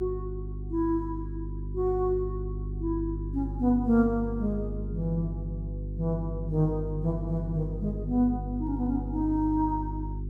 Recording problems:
electrical hum; 50 Hz, harmonics up to 400 Hz, SNR 6 dB

